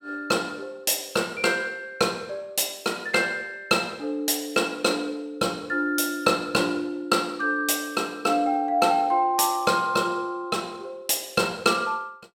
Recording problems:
none

